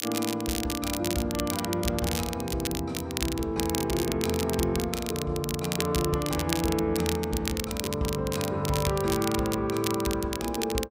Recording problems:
crackle; vinyl, SNR 5 dB

